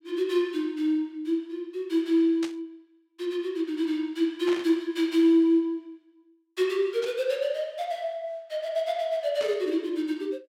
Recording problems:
static burst; 4 times, first at 2.5 s; peak -7 dB vs average level

